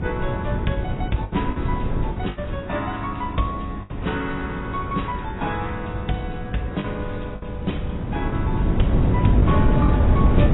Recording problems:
lossy codec; AAC, log-spectral distance 3 dB, nothing above 3.8 kHz
hum; 60 Hz, harmonics up to 480 Hz, SNR 11 dB
wind noise; below 200 Hz, SNR -3 dB
packet loss; 5% of the sound replaced, filled with the last packet

